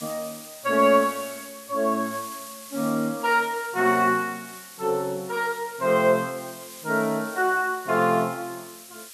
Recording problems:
background hiss; slope +3 dB per octave, SNR 16 dB

